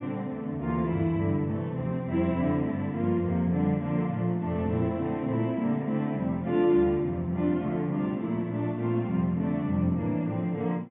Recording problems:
treble missing; nothing above 3.7 kHz

